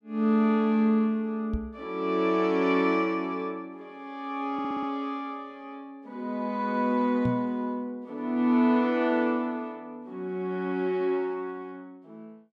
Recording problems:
microphone bump; at 1.5 s and at 7.5 s; peak +1 dB vs average level
stutter; at 4.5 s

